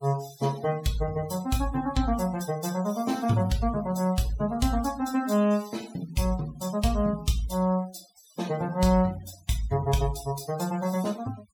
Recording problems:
denoising artefacts; signal-to-artefact ratio 18 dB

